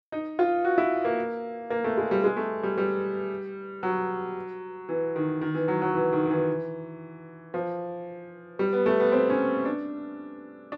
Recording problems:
none

